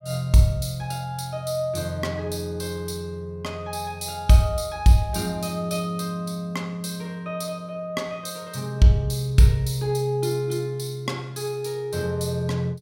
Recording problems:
none

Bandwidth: 16.5 kHz